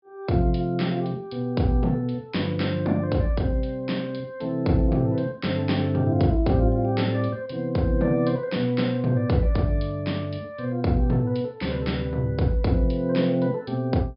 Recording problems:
treble missing; nothing above 5.5 kHz

